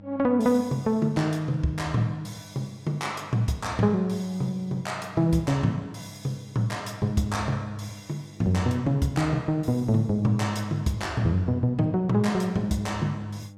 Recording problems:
hum; 50 Hz, harmonics up to 1.1 kHz, SNR 21 dB

